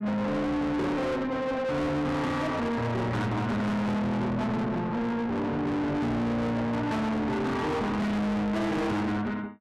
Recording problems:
distorted audio; soft clipping, signal-to-distortion ratio 6 dB

